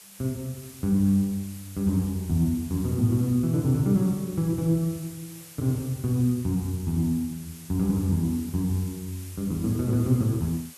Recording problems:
hiss; slope +1 dB per octave, SNR 18 dB

